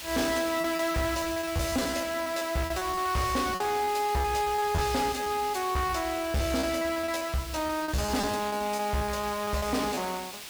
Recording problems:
distortion; hard clipping, signal-to-distortion ratio 11 dB
background hiss; slope +1 dB per octave, SNR 11 dB
packet loss; 15% of the sound replaced, filled with repeated pitch periods

